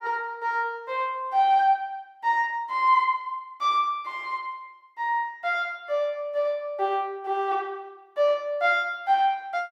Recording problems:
none

